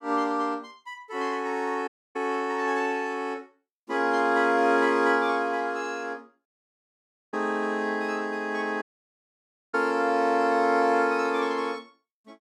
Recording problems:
dropout; at 2 s, at 6.5 s for 1 s and at 9 s for 1 s

